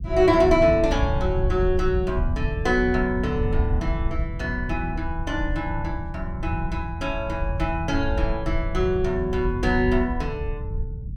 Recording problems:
low-frequency rumble; below 90 Hz, SNR 4 dB

